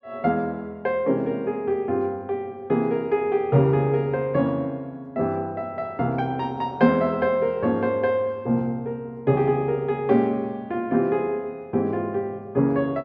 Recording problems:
none

